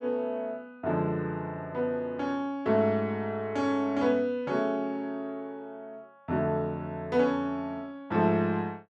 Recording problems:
none

